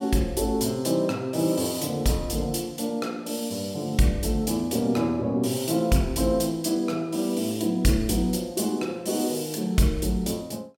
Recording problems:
none

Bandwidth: 17 kHz